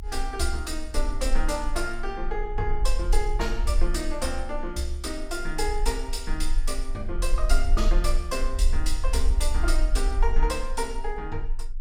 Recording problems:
rumble; below 38 Hz, strongest tone 20 Hz, SNR -1 dB

